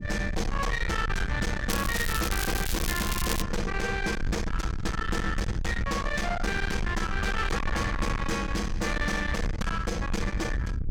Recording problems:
distorted audio; soft clipping, signal-to-distortion ratio 5 dB
low-frequency rumble; below 330 Hz, SNR 3 dB
crackling; from 1.5 to 3.5 s; loose cable, SNR 5 dB

